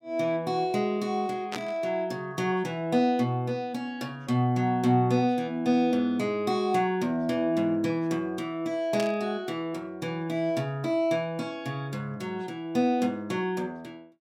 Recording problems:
burst of static; at 1.5 s and at 9 s; peak -3 dB vs average level

